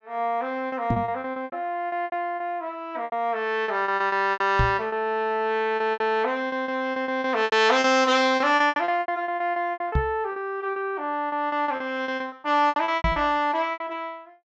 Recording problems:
treble cut off; nothing above 8 kHz
lost packets; 17% of the sound replaced, filled with repeated pitch periods
microphone thump; 4 times, first at 1 s; peak +4 dB vs average level

